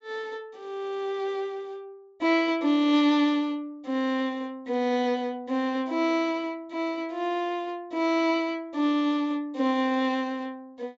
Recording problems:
treble missing; nothing above 8 kHz

